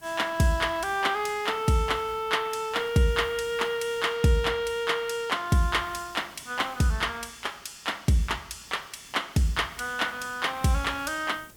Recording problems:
hiss; SNR 24 dB

